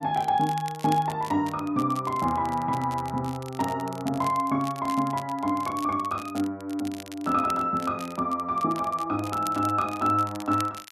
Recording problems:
crackling; vinyl, SNR 18 dB

